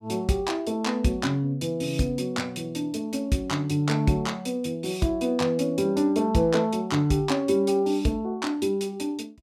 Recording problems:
none

